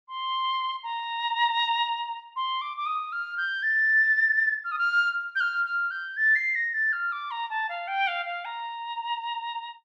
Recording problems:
none

